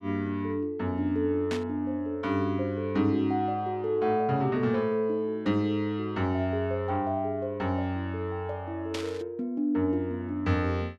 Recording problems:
burst of static; at 1.5 s and at 9 s; peak -3 dB vs average level

